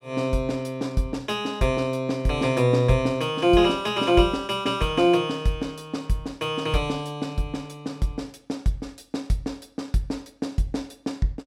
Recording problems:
none

